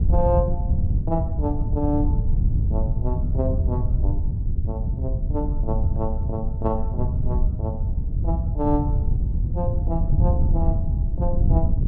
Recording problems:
wind on the microphone; below 100 Hz, SNR -5 dB

